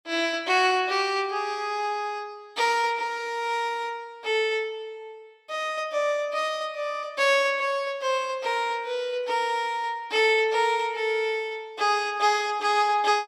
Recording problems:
none

